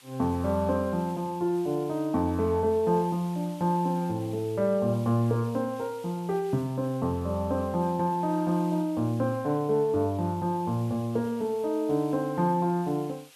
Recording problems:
hiss; SNR 24 dB

